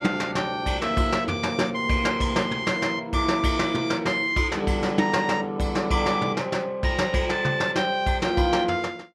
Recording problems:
none

